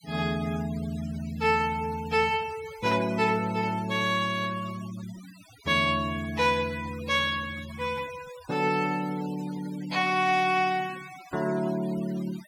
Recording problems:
denoising artefacts; signal-to-artefact ratio 18 dB

